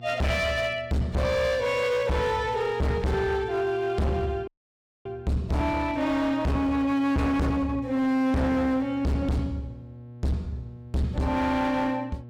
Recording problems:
distorted audio; hard clipping, signal-to-distortion ratio 6 dB
hum; 60 Hz, harmonics up to 600 Hz, SNR 19 dB
audio cutting out; at 4.5 s for 0.5 s

